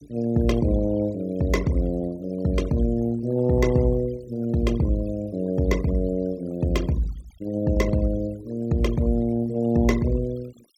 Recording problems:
denoising artefacts; signal-to-artefact ratio 21 dB

